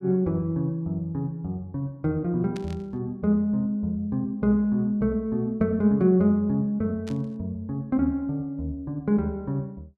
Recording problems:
static burst; at 2.5 s and at 7 s; peak -12 dB vs average level

